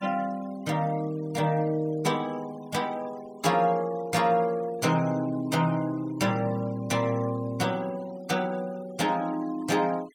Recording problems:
denoising artefacts; signal-to-artefact ratio 21 dB

